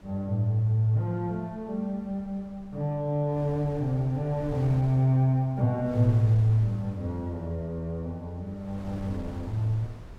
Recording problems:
wind noise; below 260 Hz, SNR 18 dB

